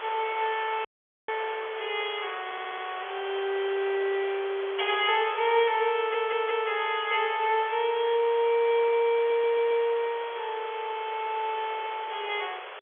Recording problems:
phone line; 300 Hz to 3.5 kHz, G.711
background hiss; SNR 13 dB
wind noise; below 960 Hz, SNR 22 dB
audio cutting out; at 1 s
stutter; at 2.5 s, at 6 s and at 9 s

